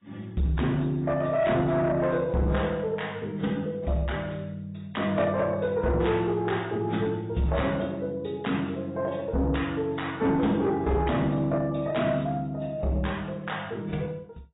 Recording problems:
low-pass filter; nothing above 3.8 kHz
lossy compression; AAC, log-spectral distance 3 dB
distortion; soft clipping, signal-to-distortion ratio 12 dB

